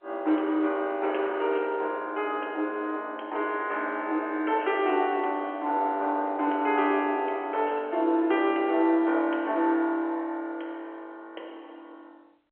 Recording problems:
telephone audio; 260 Hz to 3.4 kHz, G.711

